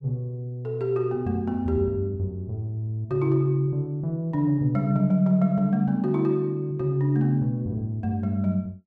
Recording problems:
none

